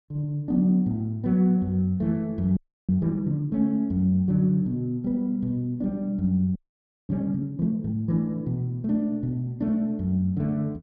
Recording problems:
frozen audio; at 2.5 s and at 6.5 s for 0.5 s

